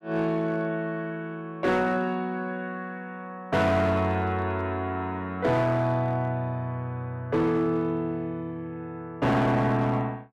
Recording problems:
distorted audio; hard clipping, signal-to-distortion ratio 12 dB

